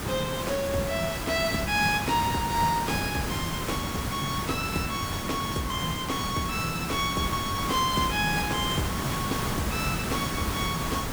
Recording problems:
background hiss; slope -4 dB per octave, SNR 2 dB

